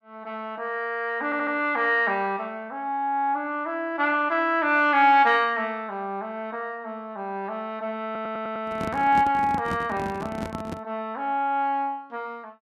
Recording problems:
stutter; at 1.5 s and at 8 s
microphone handling noise; from 8 to 11 s; peak -3 dB vs average level

